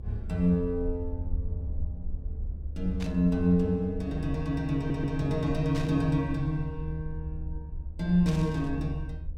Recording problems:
low-frequency rumble; below 72 Hz, SNR 9 dB
static burst; at 3 s, at 6 s and at 8.5 s; peak -9 dB vs average level
audio stuttering; at 5 s

